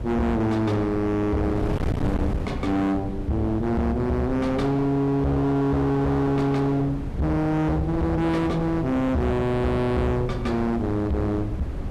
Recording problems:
distorted audio; hard clipping, signal-to-distortion ratio 6 dB
wind on the microphone; below 290 Hz, SNR 9 dB

